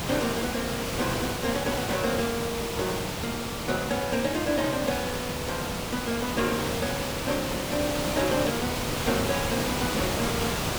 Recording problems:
hiss; slope -4 dB per octave, SNR 0 dB

